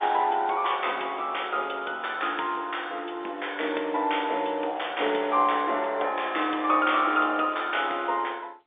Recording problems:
phone line; 300 Hz to 3.7 kHz, G.711

